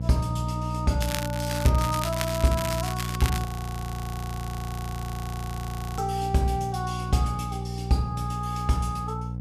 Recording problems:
hum; 60 Hz, harmonics up to 540 Hz, SNR 4 dB
crackle; from 1 to 3.5 s; loose cable, SNR 8 dB
audio freezing; at 3.5 s for 2.5 s

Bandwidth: 14.5 kHz